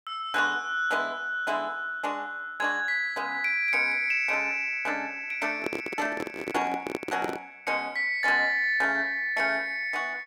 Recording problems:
microphone handling noise; from 5.5 to 7.5 s; peak 0 dB vs average level

